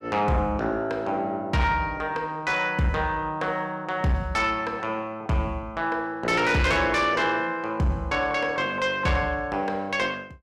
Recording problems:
distortion; soft clipping, signal-to-distortion ratio 12 dB

